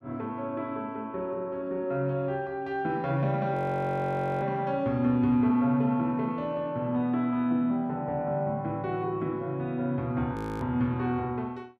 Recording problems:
audio freezing; at 3.5 s for 1 s and at 10 s

